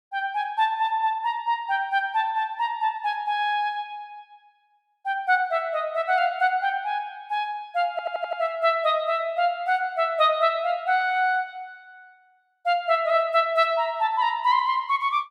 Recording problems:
stutter; at 8 s

